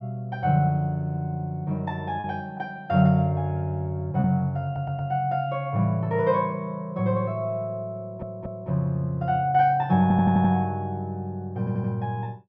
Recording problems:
lost packets; 0.7% of the sound replaced, filled with repeated pitch periods
audio stuttering; 4 times, first at 4.5 s

